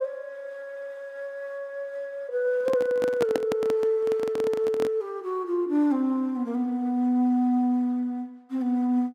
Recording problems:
handling noise; from 2.5 to 5 s; peak +2 dB vs average level

